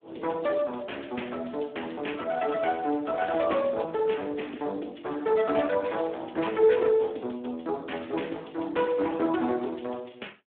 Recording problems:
phone line; 220 Hz to 3.6 kHz, Speex

